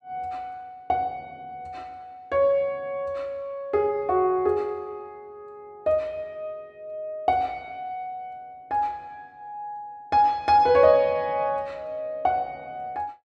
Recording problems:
none

